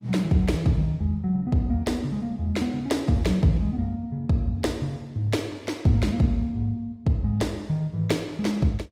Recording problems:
lossy codec; Opus, log-spectral distance 2 dB

